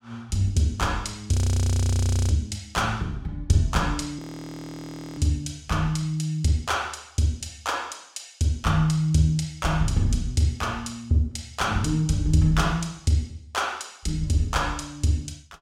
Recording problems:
frozen audio; at 1.5 s for 1 s and at 4 s for 1 s

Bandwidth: 16 kHz